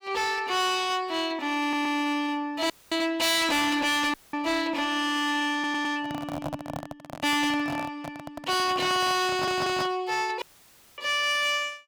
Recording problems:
distortion; hard clipping, uneven, signal-to-distortion ratio 6 dB
stutter; at 1.5 s, at 5.5 s and at 9.5 s
dropout; at 2.5 s, at 4 s and at 10 s for 0.5 s
handling noise; from 6 to 10 s; peak -3 dB vs average level

